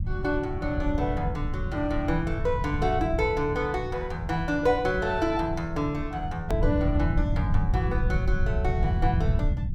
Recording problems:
rumble; below 110 Hz, SNR 2 dB
hard cut with a click; at 6.5 s

